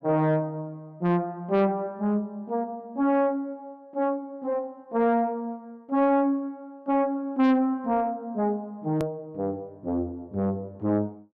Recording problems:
distortion; soft clipping, signal-to-distortion ratio 11 dB
edit click; at 9 s

